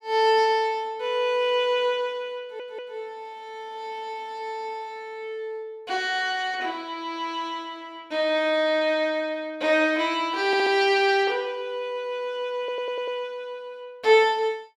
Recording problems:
audio stuttering; at 2.5 s, at 10 s and at 13 s

